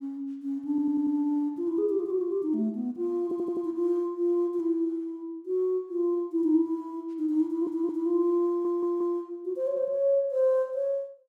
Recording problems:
audio stuttering; 4 times, first at 0.5 s

